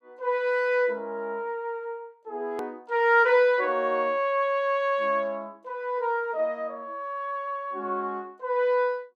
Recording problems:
hard cut with a click; at 2.5 s

